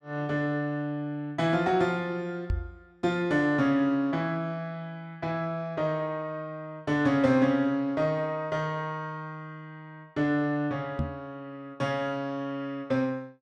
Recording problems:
microphone thump; at 2.5 s and at 11 s; peak +2 dB vs average level

